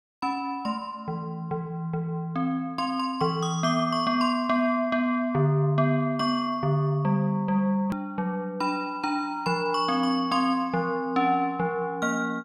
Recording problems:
click at an edit; at 8 s

